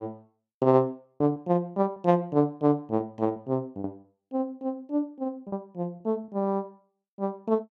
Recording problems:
packet loss; 6% of the sound replaced, filled with repeated pitch periods

